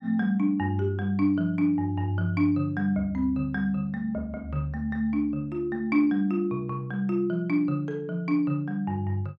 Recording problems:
none

